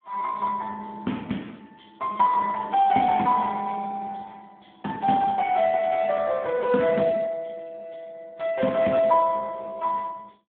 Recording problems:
telephone audio; 170 Hz to 3 kHz, Speex

